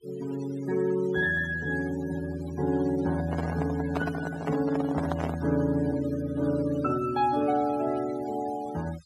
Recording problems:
denoising artefacts; signal-to-artefact ratio 17 dB
microphone handling noise; from 3 to 5.5 s; peak 0 dB vs average level

